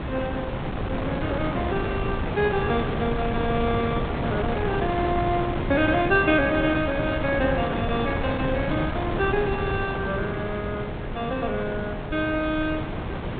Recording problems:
treble missing; nothing above 4 kHz
wind on the microphone; below 690 Hz, SNR 3 dB

